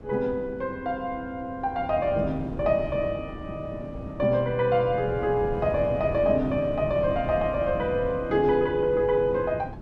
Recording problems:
wind on the microphone; below 300 Hz, SNR 11 dB

